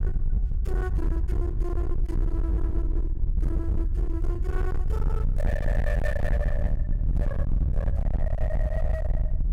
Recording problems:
distortion; hard clipping, signal-to-distortion ratio 6 dB
low-frequency rumble; below 70 Hz, SNR -8 dB

